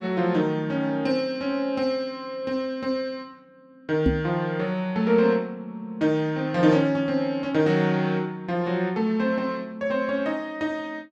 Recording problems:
microphone thump; at 4 s; peak +6 dB vs average level

